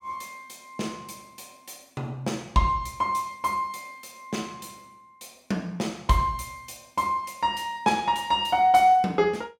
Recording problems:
none

